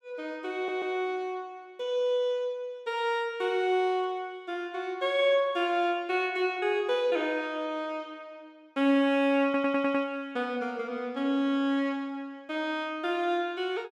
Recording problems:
audio stuttering; at 0.5 s and at 9.5 s

